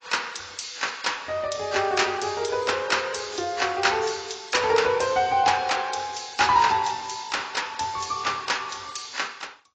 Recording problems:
lossy compression; AAC, log-spectral distance 8 dB, nothing above 7.6 kHz

